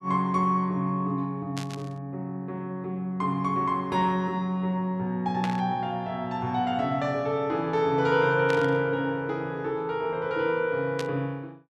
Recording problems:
burst of static; 4 times, first at 1.5 s; peak -3 dB vs average level

